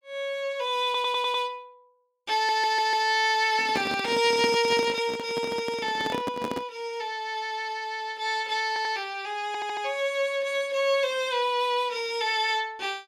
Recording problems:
stutter; 4 times, first at 1 s
microphone handling noise; from 3.5 to 6.5 s; peak 0 dB vs average level

